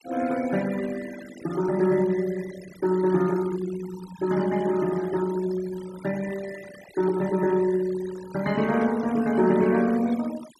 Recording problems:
noise reduction artefacts; signal-to-artefact ratio 18 dB

